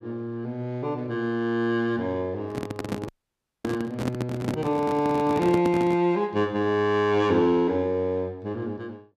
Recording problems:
microphone handling noise; from 2.5 to 6 s; peak 0 dB vs average level
dropout; at 3 s for 0.5 s

